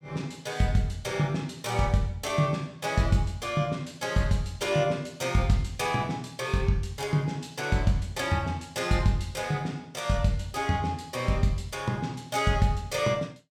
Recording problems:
none

